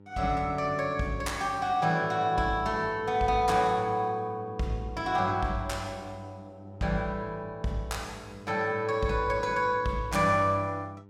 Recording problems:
hum; 50 Hz, harmonics up to 1 kHz, SNR 21 dB

